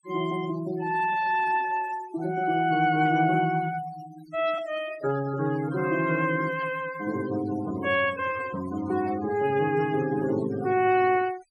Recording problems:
denoising artefacts; signal-to-artefact ratio 16 dB
static burst; 4 times, first at 3 s; peak -18 dB vs average level

